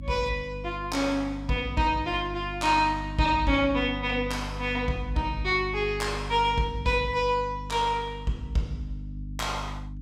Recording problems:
hum; 50 Hz, harmonics up to 300 Hz, SNR 11 dB

